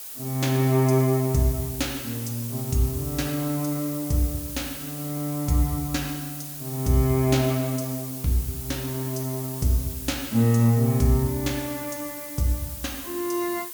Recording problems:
hiss; slope +1 dB per octave, SNR 9 dB

